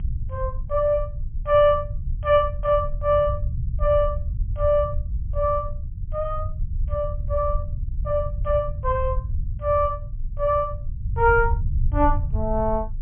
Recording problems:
low-pass filter; nothing above 3.2 kHz
rumble; below 86 Hz, SNR 6 dB

